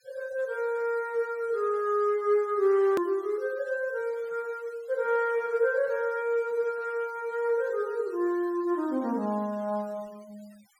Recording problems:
denoising artefacts; signal-to-artefact ratio 27 dB
click at an edit; at 3 s

